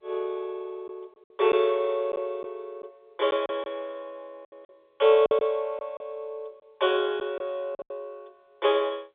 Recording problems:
telephone audio; 320 Hz to 3.6 kHz, G.711
lost packets; 7% of the sound replaced, filled with silence

